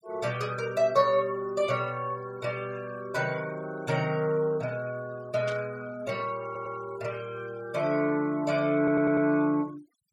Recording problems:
noise reduction artefacts; signal-to-artefact ratio 22 dB
static burst; at 5.5 s; peak -8 dB vs average level
stutter; at 6.5 s and at 9 s

